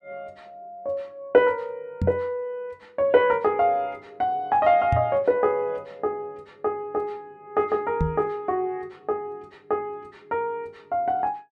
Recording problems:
microphone bump; at 2 s, at 5 s and at 8 s; peak +4 dB vs average level

